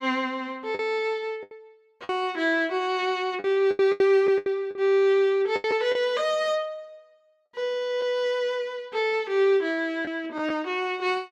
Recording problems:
lost packets; 7% of the sound replaced, filled with the last packet

